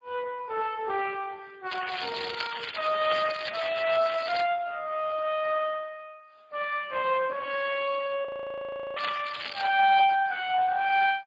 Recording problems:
codec artefacts; MP3, then Speex, log-spectral distance 9 dB
crackling; from 1.5 to 4.5 s and at 9 s; loose cable, SNR 6 dB
frozen audio; at 8.5 s for 0.5 s

